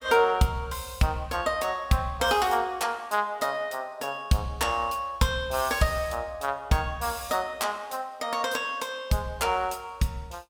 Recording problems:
none

